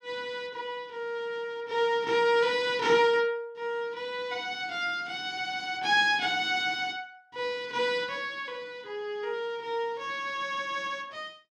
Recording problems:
none

